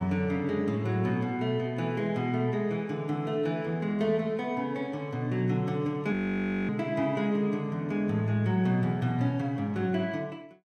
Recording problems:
frozen audio; at 6 s for 0.5 s

